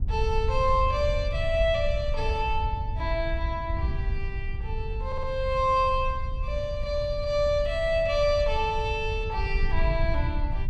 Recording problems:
wind on the microphone; below 76 Hz, SNR 4 dB
stutter; at 5 s

